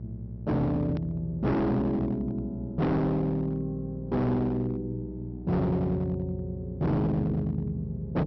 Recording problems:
low-pass filter; nothing above 5.8 kHz
distorted audio; hard clipping, uneven, signal-to-distortion ratio 6 dB
hum; 60 Hz, harmonics up to 600 Hz, SNR 11 dB
hard cut with a click; at 1 s

